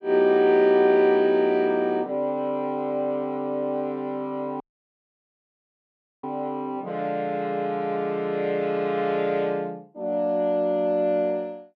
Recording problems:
audio cutting out; at 4.5 s for 1.5 s

